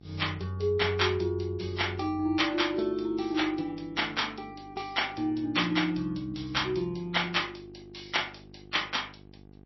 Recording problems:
lossy compression; MP3, log-spectral distance 7 dB, nothing above 5.7 kHz
hum; 50 Hz, harmonics up to 900 Hz, SNR 22 dB

